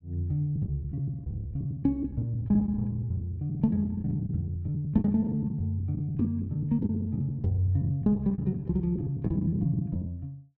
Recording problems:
lost packets; 16% of the sound replaced, filled with the last packet

